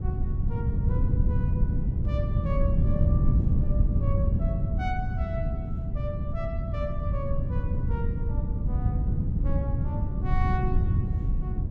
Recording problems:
wind noise; below 130 Hz, SNR -11 dB

